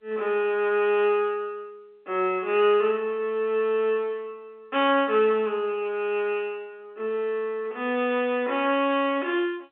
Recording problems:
phone line; 300 Hz to 3.6 kHz, G.711

